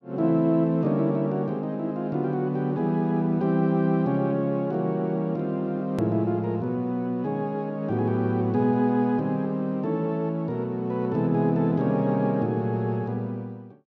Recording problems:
hard cut with a click; at 6 s

